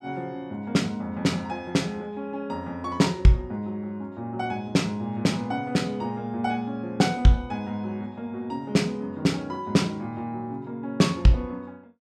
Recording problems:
none

